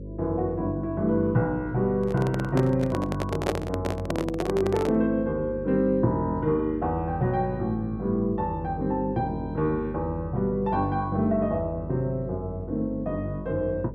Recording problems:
hum; 50 Hz, harmonics up to 550 Hz, SNR 12 dB
handling noise; from 2 to 5 s; peak +4 dB vs average level

